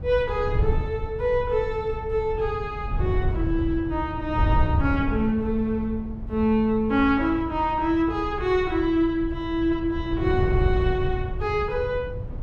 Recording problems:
wind on the microphone; below 110 Hz, SNR 5 dB

